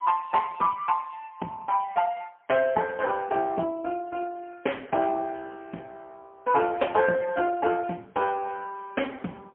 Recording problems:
phone line; 300 Hz to 3.2 kHz, AMR-NB, then MP3

